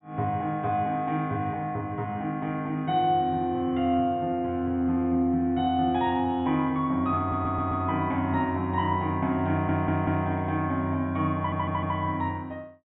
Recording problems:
treble cut off; nothing above 4 kHz
stutter; at 7 s, at 9.5 s and at 11 s

